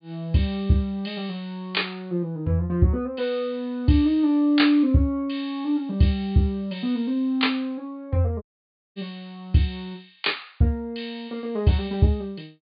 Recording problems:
treble missing; nothing above 4.8 kHz
audio cutting out; at 8.5 s for 0.5 s

